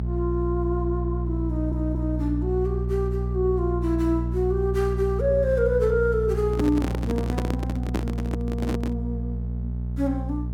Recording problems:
hum; 60 Hz, harmonics up to 420 Hz, SNR 2 dB
audio stuttering; at 1.5 s
handling noise; from 6.5 to 9 s; peak +3 dB vs average level

